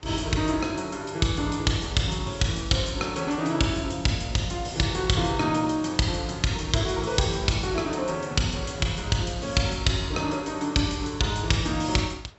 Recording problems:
treble cut off; nothing above 7.8 kHz
wind noise; below 1.9 kHz, SNR 25 dB

